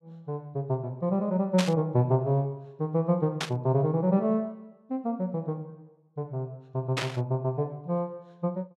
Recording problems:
burst of static; at 1.5 s, at 3.5 s and at 7 s; peak +3 dB vs average level

